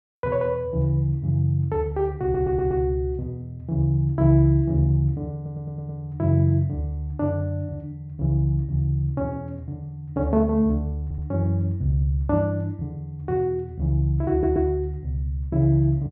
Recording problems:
audio stuttering; 4 times, first at 2 s

